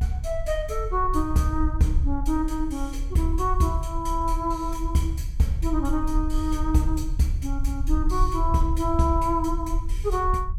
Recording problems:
rumble; below 58 Hz, SNR 4 dB

